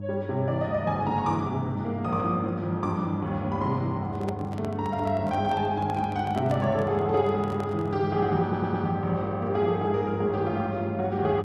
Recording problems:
electrical hum; 50 Hz, harmonics up to 600 Hz, SNR 8 dB
microphone handling noise; from 4 to 8 s; peak -6 dB vs average level
stutter; at 8.5 s

